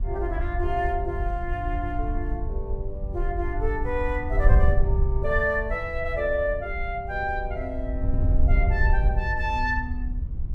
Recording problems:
wind noise; below 70 Hz, SNR 0 dB

